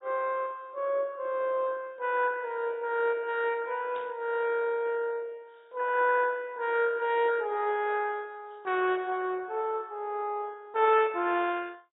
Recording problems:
treble cut off; nothing above 3.1 kHz
codec artefacts; MP2, log-spectral distance 3 dB
static burst; at 4 s; peak -16 dB vs average level

